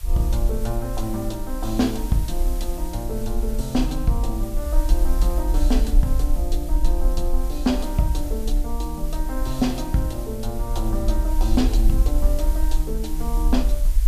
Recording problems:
hiss; slope 0 dB per octave, SNR 14 dB
low-frequency rumble; below 46 Hz, SNR -1 dB

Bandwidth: 14.5 kHz